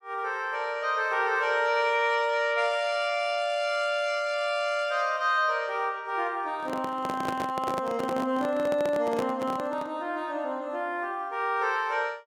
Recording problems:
handling noise; from 6.5 to 10 s; peak -2 dB vs average level

